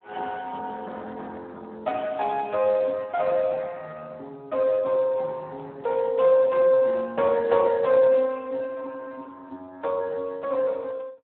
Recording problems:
telephone audio; 240 Hz to 2.6 kHz, Speex

